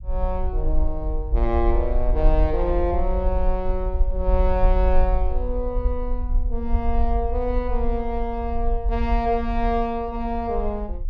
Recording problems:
low-frequency rumble; below 50 Hz, SNR 0 dB

